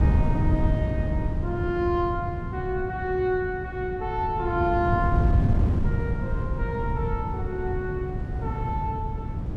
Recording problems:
wind noise; below 160 Hz, SNR -1 dB

